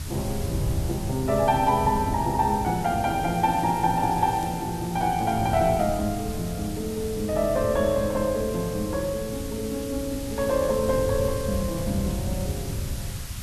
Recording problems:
background hiss; slope +2 dB per octave, SNR 14 dB
wind noise; below 130 Hz, SNR 9 dB
crackle; from 3.5 to 6 s and from 10 to 13 s; loose cable, SNR 25 dB

